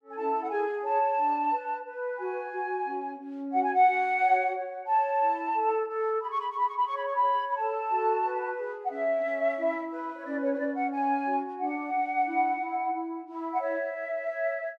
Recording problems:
none

